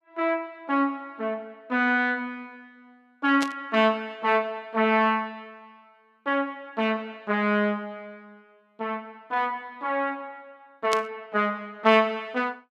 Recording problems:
burst of static; at 3.5 s and at 11 s; peak +1 dB vs average level

